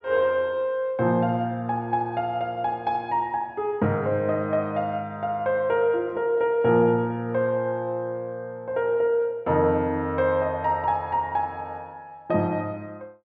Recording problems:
none

